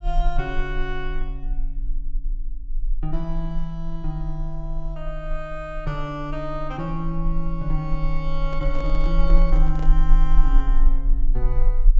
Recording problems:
treble missing; nothing above 7.6 kHz
rumble; below 32 Hz, strongest tone 18 Hz, SNR -3 dB
microphone handling noise; from 8.5 to 10 s; peak -5 dB vs average level

